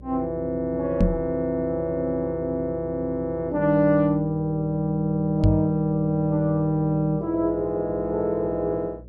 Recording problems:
electrical hum; 60 Hz, harmonics up to 600 Hz, SNR 20 dB
microphone thump; at 1 s and at 5.5 s; peak +7 dB vs average level

